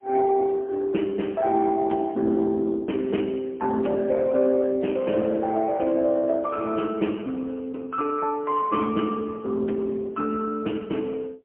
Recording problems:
phone line; 190 Hz to 3.2 kHz, AMR-NB, then MP3

